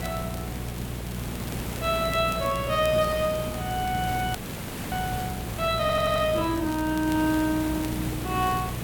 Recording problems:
hum; 60 Hz, harmonics up to 840 Hz, SNR 9 dB
hiss; slope -5 dB per octave, SNR 8 dB
crackling; vinyl, SNR 20 dB
frozen audio; at 4.5 s for 0.5 s
audio stuttering; at 6 s

